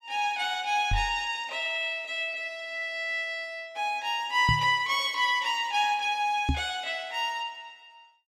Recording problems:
microphone bump; at 1 s, at 4.5 s and at 6.5 s; peak +4 dB vs average level

